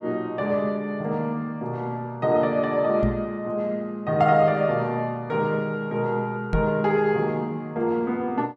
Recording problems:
microphone thump; at 3 s and at 6.5 s; peak +4 dB vs average level

